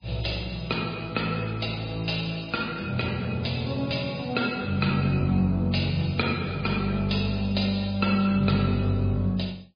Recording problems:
codec artefacts; MP3, log-spectral distance 7 dB

